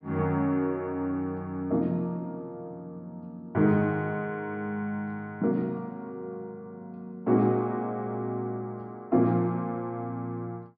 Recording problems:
treble missing; nothing above 5.5 kHz

